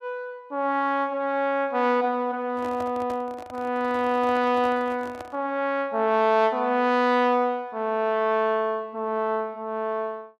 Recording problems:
microphone handling noise; from 2.5 to 5.5 s; peak -10 dB vs average level

